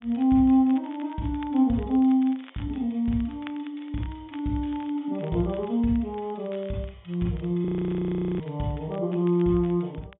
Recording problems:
low-pass filter; nothing above 3.6 kHz
crackle; vinyl, SNR 27 dB
audio freezing; at 7.5 s for 0.5 s

